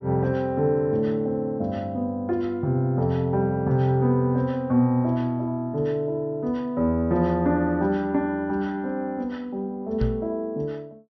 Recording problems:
low-pass filter; nothing above 6.2 kHz
knock on the microphone; at 10 s; peak +3 dB vs average level

